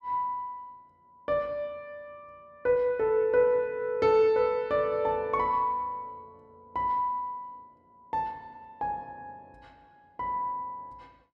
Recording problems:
none

